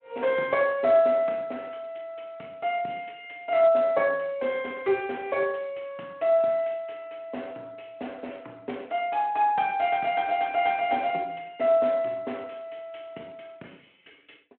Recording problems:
phone line; 220 Hz to 3.2 kHz, Speex

